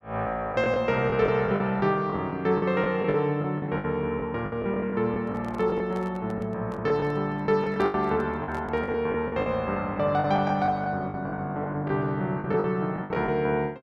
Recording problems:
lost packets; 13% of the sound replaced, filled with the last packet
microphone handling noise; from 5 to 9 s; peak -9 dB vs average level

